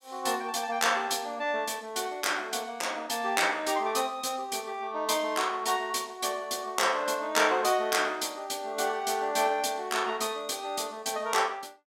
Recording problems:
none

